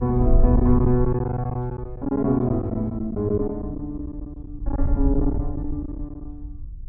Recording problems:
wind on the microphone; below 66 Hz, SNR 5 dB
packet loss; 11% of the sound replaced, filled with silence

